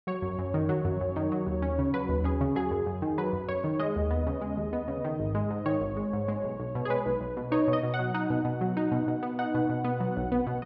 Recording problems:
treble missing; nothing above 5.5 kHz

